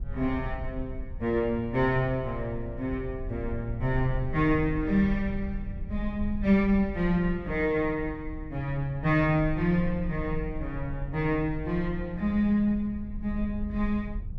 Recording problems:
rumble; below 74 Hz, SNR 10 dB

